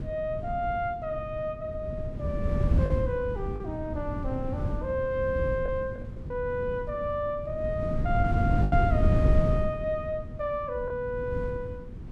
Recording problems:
hum; 60 Hz, harmonics up to 720 Hz, SNR 18 dB
wind noise; below 150 Hz, SNR 0 dB
lost packets; 3% of the sound replaced, filled with the last packet

